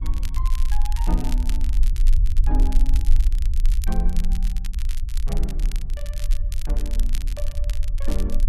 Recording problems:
low-frequency rumble; below 44 Hz, SNR -11 dB
crackle; vinyl, SNR 6 dB

